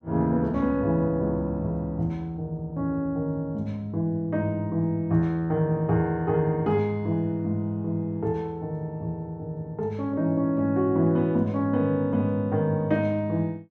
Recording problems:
none

